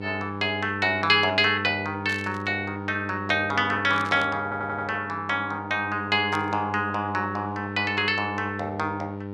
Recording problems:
hum; 50 Hz, harmonics up to 1.4 kHz, SNR 10 dB
static burst; at 2 s, at 4 s and at 6.5 s; peak -8 dB vs average level
stutter; at 4.5 s

